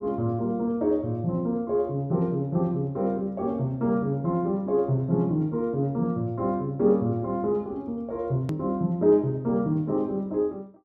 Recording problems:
click at an edit; at 8.5 s

